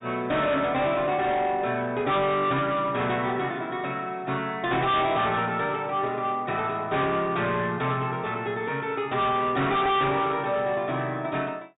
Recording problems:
treble cut off; nothing above 4 kHz
distortion; soft clipping, signal-to-distortion ratio 7 dB

